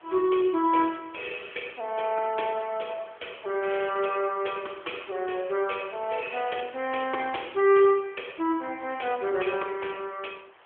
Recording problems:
phone line; 280 Hz to 3.4 kHz, AMR-NB
hiss; SNR 26 dB

